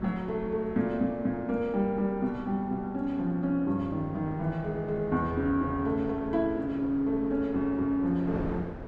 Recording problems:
wind on the microphone; below 540 Hz, SNR 13 dB

